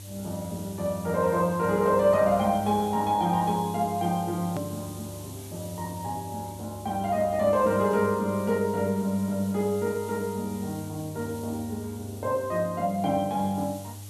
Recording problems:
hum; 50 Hz, harmonics up to 600 Hz, SNR 15 dB
hiss; SNR 19 dB
click at an edit; at 4.5 s

